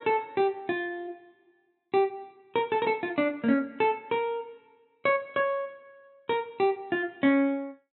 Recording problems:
treble missing; nothing above 4 kHz

